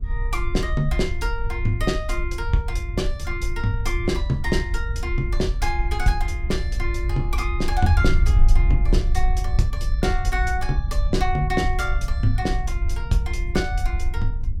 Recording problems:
wind on the microphone; below 60 Hz, SNR 0 dB

